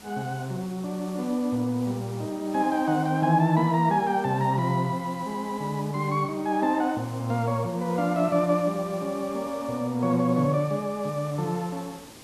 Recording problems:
background hiss; slope -3 dB per octave, SNR 21 dB

